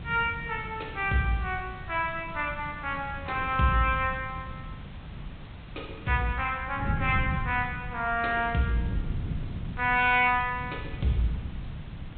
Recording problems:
treble cut off; nothing above 4 kHz
background hiss; SNR 22 dB
wind on the microphone; below 160 Hz, SNR 10 dB

